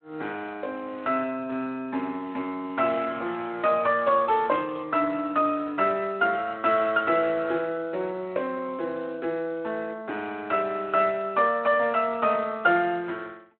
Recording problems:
telephone audio; 220 Hz to 3.6 kHz, Speex

